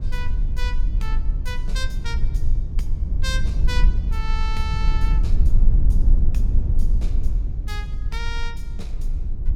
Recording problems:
rumble; below 54 Hz, strongest tone 18 Hz, SNR -10 dB

